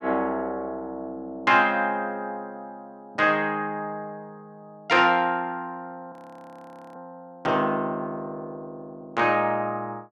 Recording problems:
frozen audio; at 6 s for 1 s

